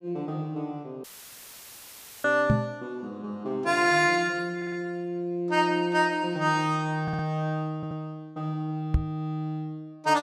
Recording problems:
dropout; at 1 s for 1 s; filled with static
microphone bump; at 2.5 s and at 9 s; peak +8 dB vs average level
stutter; at 4.5 s, at 7 s and at 8 s

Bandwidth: 15 kHz